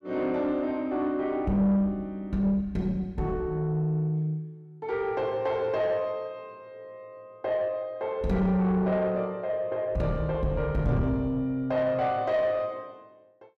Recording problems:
distorted audio; soft clipping, signal-to-distortion ratio 11 dB

